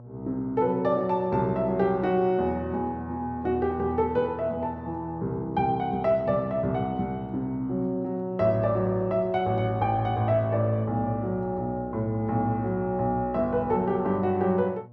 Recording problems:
hum; 60 Hz, harmonics up to 1.1 kHz, SNR 20 dB

